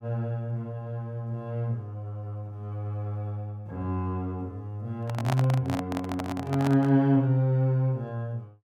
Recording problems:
handling noise; from 5 to 7 s; peak +1 dB vs average level

